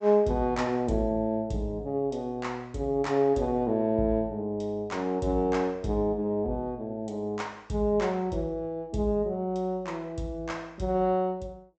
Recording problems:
low-pass filter; nothing above 8 kHz

